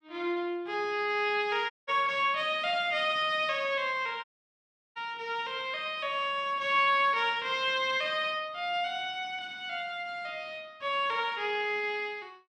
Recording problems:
dropout; at 1.5 s and at 4 s for 0.5 s

